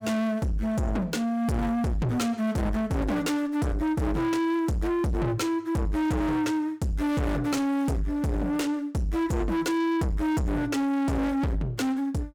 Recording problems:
distorted audio; soft clipping, signal-to-distortion ratio 6 dB

